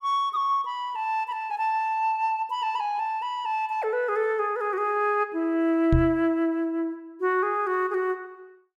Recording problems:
knock on the microphone; at 6 s; peak +6 dB vs average level

